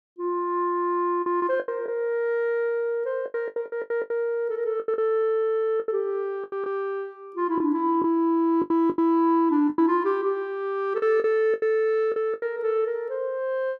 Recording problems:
packet loss; 10% of the sound replaced, filled with the last packet

